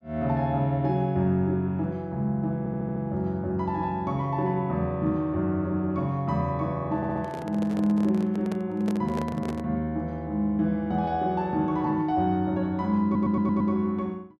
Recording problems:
audio stuttering; at 2.5 s, at 7 s and at 13 s
microphone handling noise; from 7 to 9.5 s; peak -4 dB vs average level

